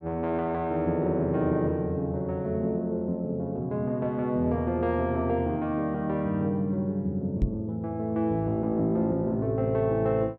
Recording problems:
microphone thump; at 7.5 s; peak +5 dB vs average level

